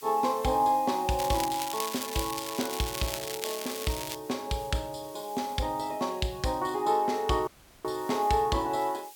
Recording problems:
hiss; slope +3 dB per octave, SNR 19 dB
crackle; from 1 to 4 s; loose cable, SNR 6 dB
dropout; at 7.5 s

